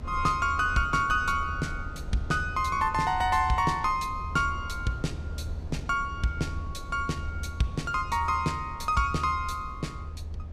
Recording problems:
low-frequency rumble; below 86 Hz, SNR 10 dB

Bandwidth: 15.5 kHz